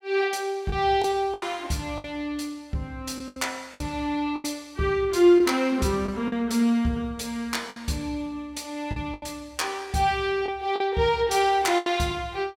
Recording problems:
lost packets; 7% of the sound replaced, filled with the last packet

